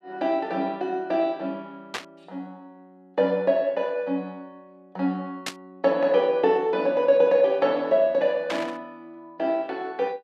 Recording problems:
burst of static; at 2 s, at 5.5 s and at 8.5 s; peak -2 dB vs average level

